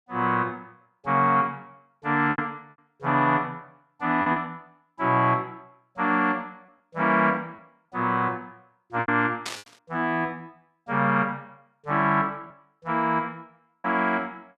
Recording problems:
packet loss; 3% of the sound replaced, filled with repeated pitch periods
burst of static; at 9.5 s; peak -3 dB vs average level

